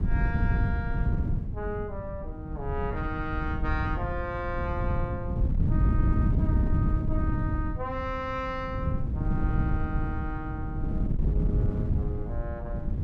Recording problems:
wind noise; below 140 Hz, SNR -6 dB

